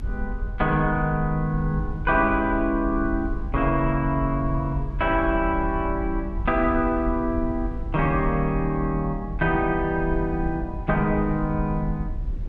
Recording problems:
low-frequency rumble; below 64 Hz, SNR 8 dB

